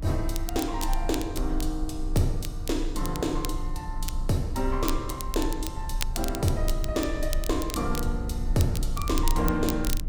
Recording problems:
rumble; below 52 Hz, strongest tone 28 Hz, SNR 3 dB
crackling; vinyl, SNR 9 dB

